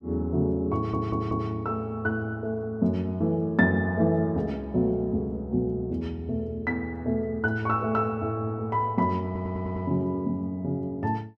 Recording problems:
stutter; at 1 s and at 9.5 s

